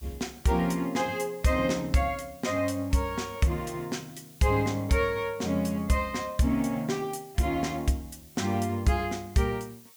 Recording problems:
background hiss; slope +3 dB per octave, SNR 23 dB

